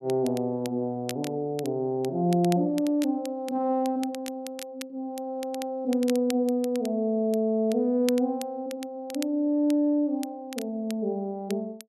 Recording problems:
crackle; vinyl, SNR 17 dB

